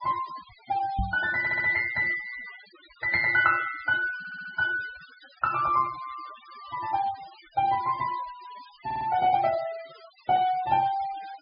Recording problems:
low-pass filter; nothing above 5.1 kHz
denoising artefacts; signal-to-artefact ratio 18 dB
knock on the microphone; at 1 s; peak 0 dB vs average level
audio stuttering; at 1.5 s, at 4 s and at 9 s

